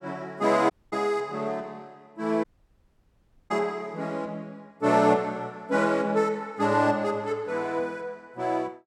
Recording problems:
audio cutting out; at 0.5 s and at 2.5 s for 1 s

